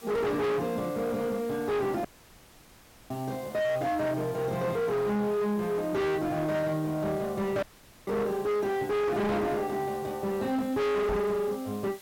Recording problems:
distortion; hard clipping, signal-to-distortion ratio 6 dB
background hiss; slope -1 dB per octave, SNR 21 dB
audio cutting out; at 2 s for 1 s and at 7.5 s
knock on the microphone; at 11 s; peak +1 dB vs average level

